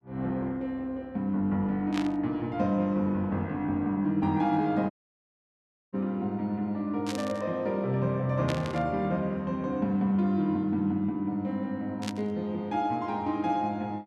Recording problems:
burst of static; 4 times, first at 2 s; peak -2 dB vs average level
dropout; at 5 s for 1 s

